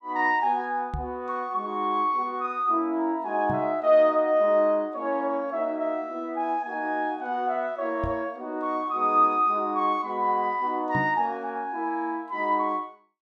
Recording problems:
microphone bump; 4 times, first at 1 s; peak -2 dB vs average level

